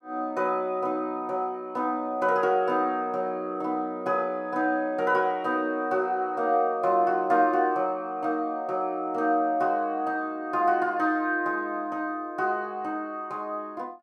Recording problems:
none

